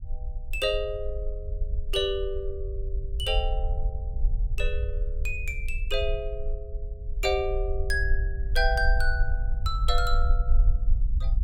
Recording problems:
rumble; below 54 Hz, SNR 0 dB

